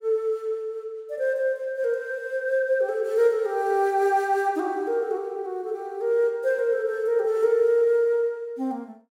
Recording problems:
none

